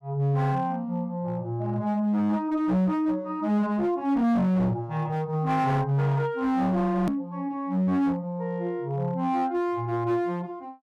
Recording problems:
distortion; hard clipping, uneven, signal-to-distortion ratio 11 dB
edit click; at 7 s

